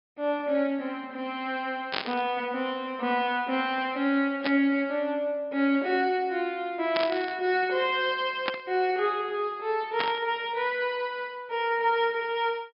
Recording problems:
treble cut off; nothing above 5.5 kHz
static burst; 5 times, first at 2 s; peak +3 dB vs average level

